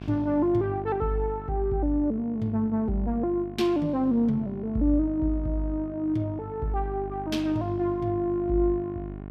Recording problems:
hum; 50 Hz, harmonics up to 1.4 kHz, SNR 13 dB

